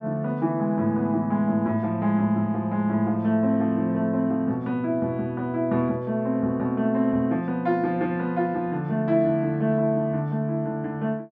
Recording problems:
none

